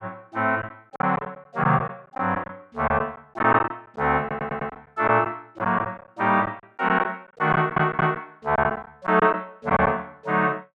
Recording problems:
packet loss; 9% of the sound replaced, filled with silence
audio stuttering; at 4 s and at 7.5 s

